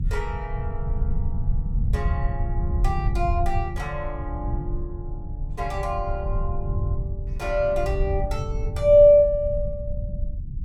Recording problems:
rumble; below 88 Hz, SNR 6 dB

